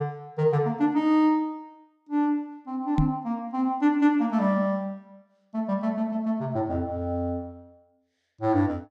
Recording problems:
microphone thump; at 3 s; peak +6 dB vs average level

